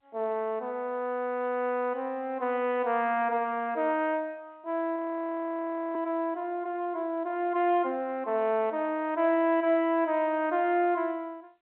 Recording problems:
telephone audio; 240 Hz to 3.5 kHz, G.711
frozen audio; at 5 s for 1 s

